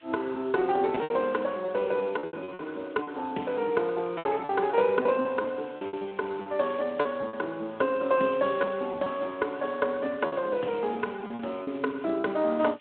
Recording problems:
telephone audio; 220 Hz to 3.4 kHz, Speex
background hiss; SNR 27 dB
lost packets; 9% of the sound replaced, filled with repeated pitch periods

